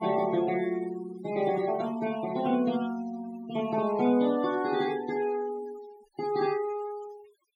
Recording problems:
denoising artefacts; signal-to-artefact ratio 17 dB

